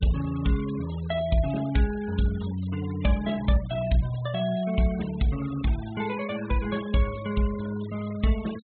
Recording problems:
treble cut off; nothing above 4 kHz
denoising artefacts; signal-to-artefact ratio 17 dB

